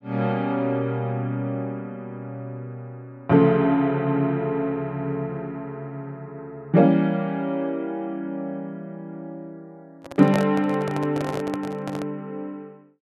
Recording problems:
handling noise; from 10 to 12 s; peak +1 dB vs average level

